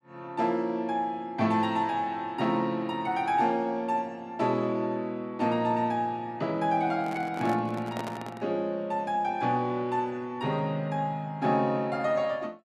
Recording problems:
handling noise; from 7 to 8.5 s; peak -4 dB vs average level

